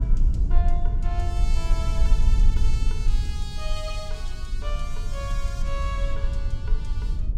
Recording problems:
low-frequency rumble; below 50 Hz, strongest tone 22 Hz, SNR -10 dB

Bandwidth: 16.5 kHz